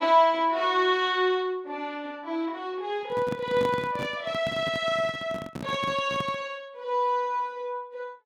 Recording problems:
handling noise; from 3 to 6.5 s; peak -2 dB vs average level

